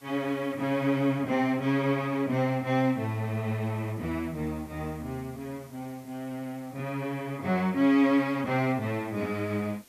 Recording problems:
hiss; slope -1 dB per octave, SNR 27 dB

